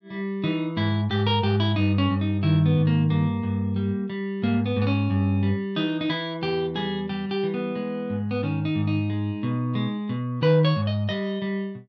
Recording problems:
none

